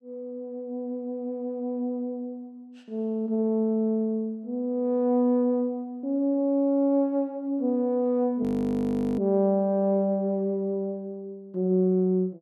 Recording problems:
audio freezing; at 8.5 s for 1 s

